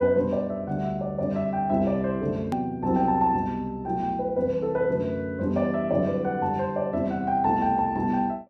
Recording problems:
edit click; at 2.5 s

